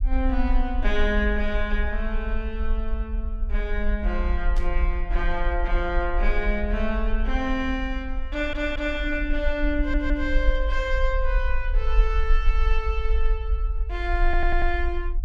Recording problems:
rumble; below 46 Hz, SNR 0 dB
burst of static; at 4.5 s; peak -11 dB vs average level
audio stuttering; at 8.5 s, at 10 s and at 14 s

